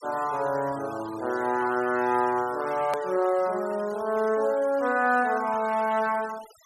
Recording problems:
noise reduction artefacts; signal-to-artefact ratio 20 dB
click at an edit; at 3 s

